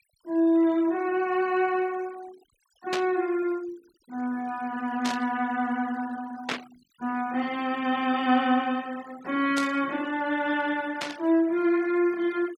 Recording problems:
noise reduction artefacts; signal-to-artefact ratio 23 dB
burst of static; 5 times, first at 3 s; peak +1 dB vs average level

